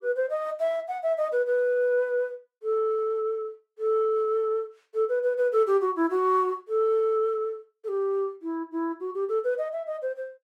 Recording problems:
none

